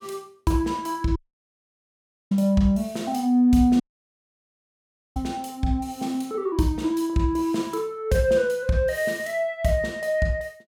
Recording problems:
dropout; at 1 s for 1 s and at 4 s for 1.5 s

